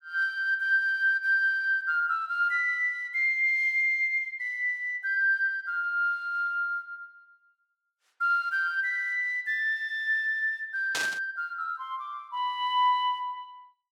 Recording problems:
burst of static; at 11 s; peak 0 dB vs average level

